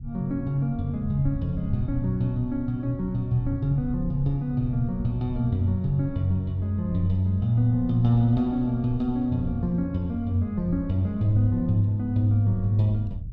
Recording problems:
low-frequency rumble; below 100 Hz, SNR 13 dB

